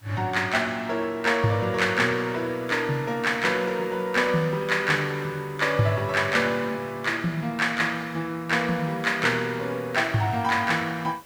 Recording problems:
hiss; slope -3 dB per octave, SNR 27 dB

